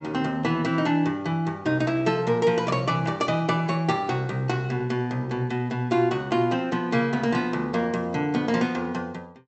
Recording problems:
low-pass filter; nothing above 7.9 kHz

